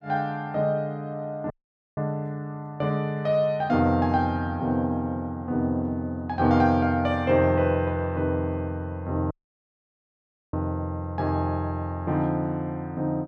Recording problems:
audio cutting out; at 1.5 s and at 9.5 s for 1 s

